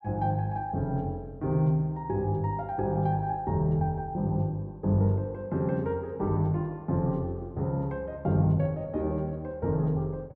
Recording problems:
none

